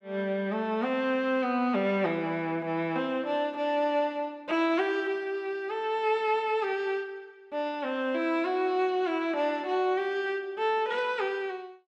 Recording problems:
none

